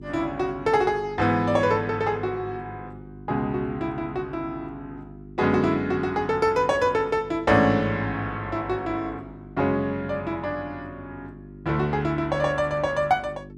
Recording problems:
electrical hum; 50 Hz, harmonics up to 400 Hz, SNR 18 dB

